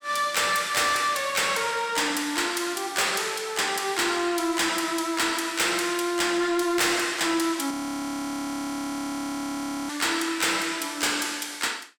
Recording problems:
distorted audio; soft clipping, signal-to-distortion ratio 11 dB
frozen audio; at 7.5 s for 2 s

